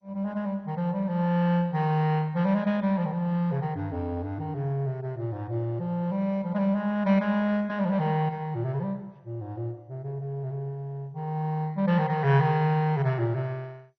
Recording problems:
lossy compression; MP2, log-spectral distance 2 dB, nothing above 6 kHz

